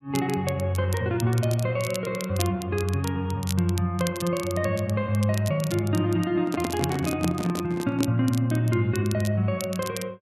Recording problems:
crackling; vinyl, SNR 14 dB
microphone handling noise; from 6.5 to 8 s; peak +1 dB vs average level

